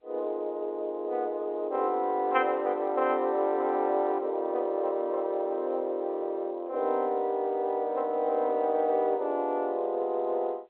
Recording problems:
telephone audio; 300 Hz to 3.4 kHz, G.711

